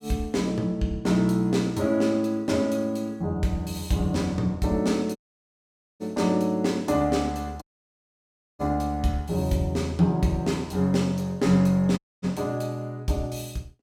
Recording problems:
dropout; at 5 s for 1 s, at 7.5 s for 1 s and at 12 s

